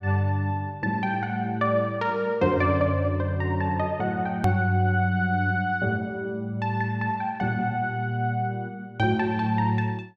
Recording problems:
hard cut with a click; at 4.5 s

